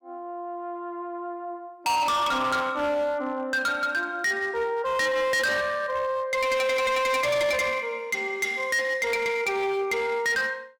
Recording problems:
distorted audio; hard clipping, signal-to-distortion ratio 7 dB

